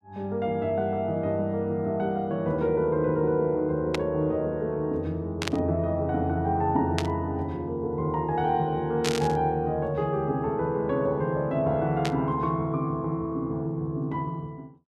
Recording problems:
static burst; 5 times, first at 4 s; peak +2 dB vs average level

